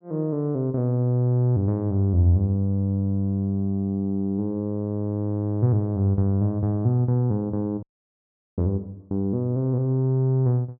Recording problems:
audio cutting out; at 8 s for 1 s

